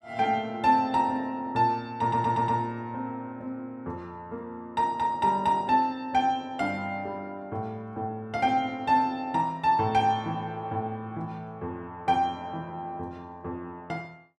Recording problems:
stutter; at 2 s

